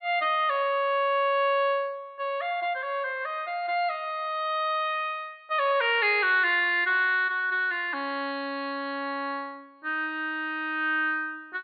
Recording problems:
treble cut off; nothing above 4.6 kHz

